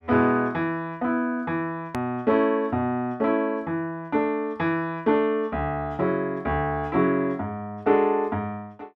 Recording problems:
click at an edit; at 2 s

